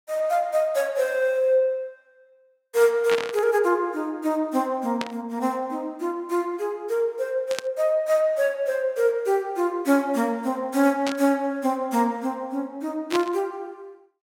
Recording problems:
burst of static; 5 times, first at 3 s; peak -1 dB vs average level

